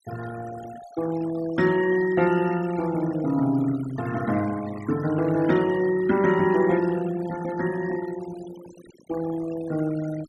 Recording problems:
noise reduction artefacts; signal-to-artefact ratio 16 dB

